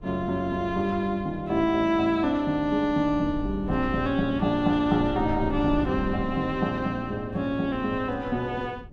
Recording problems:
wind on the microphone; below 110 Hz, SNR 14 dB

